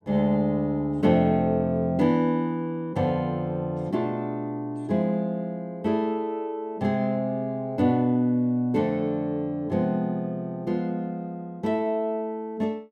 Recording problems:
none

